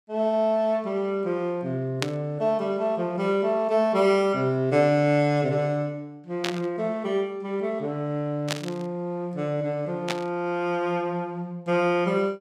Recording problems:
static burst; 4 times, first at 2 s; peak +2 dB vs average level

